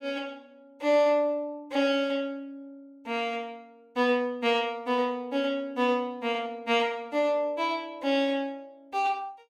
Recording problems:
none

